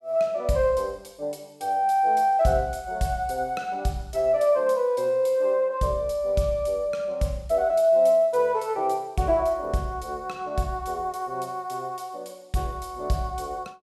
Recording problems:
none

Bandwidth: 14.5 kHz